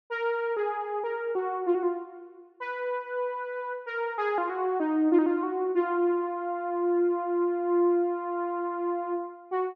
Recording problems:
none

